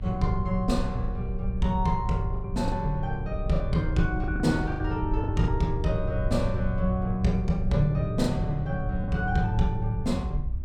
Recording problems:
hum; 60 Hz, harmonics up to 1.2 kHz, SNR 22 dB
low-frequency rumble; below 70 Hz, SNR 6 dB
lost packets; 5% of the sound replaced, filled with the last packet

